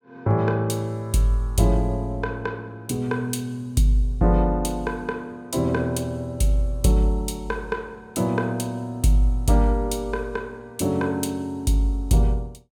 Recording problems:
none

